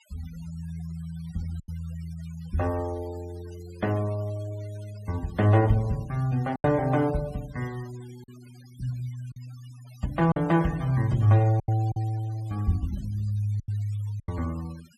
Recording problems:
noise reduction artefacts; signal-to-artefact ratio 24 dB
lost packets; 4% of the sound replaced, filled with silence

